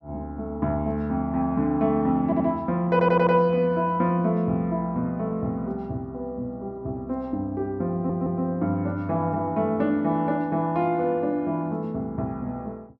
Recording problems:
audio stuttering; at 2.5 s, at 3 s and at 8 s

